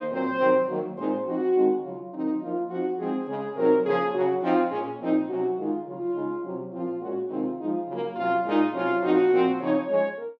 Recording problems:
none

